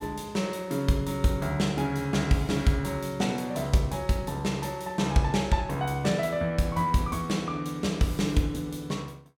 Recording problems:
none

